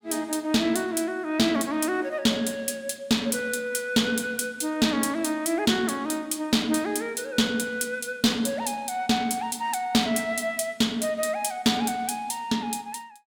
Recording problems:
distortion; soft clipping, signal-to-distortion ratio 12 dB

